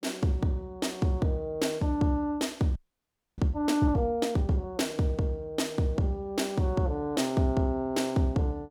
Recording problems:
audio freezing; at 3 s for 0.5 s

